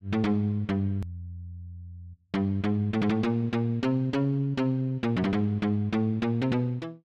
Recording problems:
edit click; at 1 s

